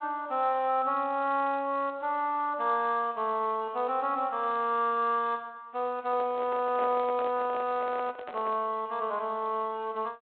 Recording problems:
phone line; 300 Hz to 3.7 kHz, G.726
microphone handling noise; from 6 to 8.5 s; peak -7 dB vs average level

